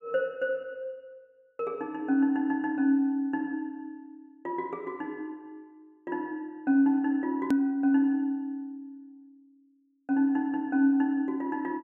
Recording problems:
click at an edit; at 7.5 s

